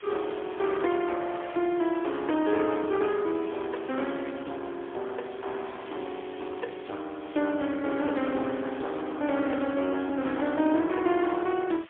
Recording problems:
phone line; 240 Hz to 3.4 kHz, AMR-NB, then MP3
hiss; SNR 20 dB

